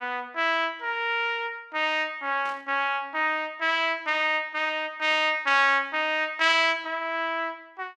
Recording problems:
burst of static; at 2.5 s, at 5 s and at 6.5 s; peak -14 dB vs average level

